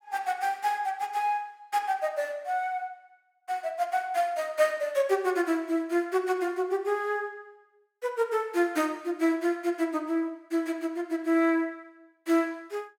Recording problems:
none

